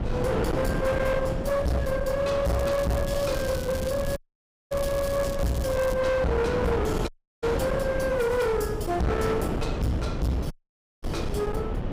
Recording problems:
distortion; hard clipping, uneven, signal-to-distortion ratio 6 dB
rumble; below 160 Hz, SNR 9 dB
wind noise; below 550 Hz, SNR 6 dB
crackling; from 2.5 to 6 s; loose cable, SNR 15 dB
audio cutting out; at 4 s for 0.5 s, at 7 s and at 11 s for 0.5 s

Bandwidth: 15.5 kHz